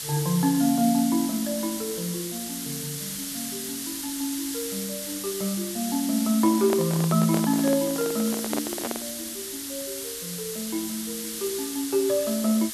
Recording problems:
background hiss; SNR 5 dB
microphone handling noise; from 6.5 to 9 s; peak +1 dB vs average level

